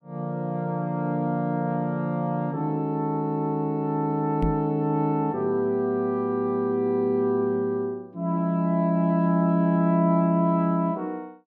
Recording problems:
microphone thump; at 4.5 s; peak +4 dB vs average level

